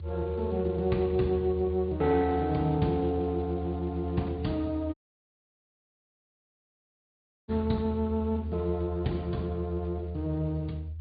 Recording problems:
low-pass filter; nothing above 4.6 kHz
codec artefacts; Speex, log-spectral distance 2 dB
low-frequency rumble; below 82 Hz, strongest tone 80 Hz, SNR 8 dB
audio cutting out; at 5 s for 2.5 s

